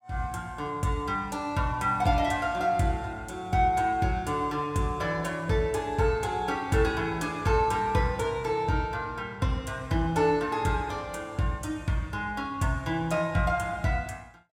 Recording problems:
none

